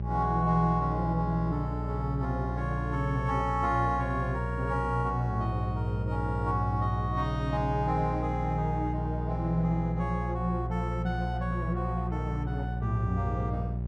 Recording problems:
hum; 60 Hz, harmonics up to 600 Hz, SNR 3 dB

